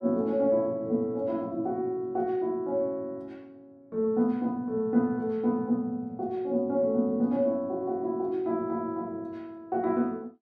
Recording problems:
none

